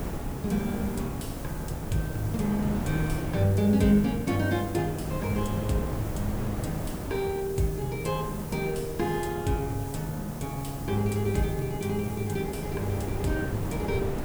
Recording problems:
hiss; slope +3 dB per octave, SNR 16 dB
wind on the microphone; below 400 Hz, SNR 6 dB

